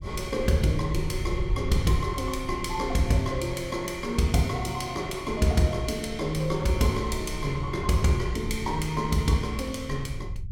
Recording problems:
rumble; below 88 Hz, SNR 10 dB

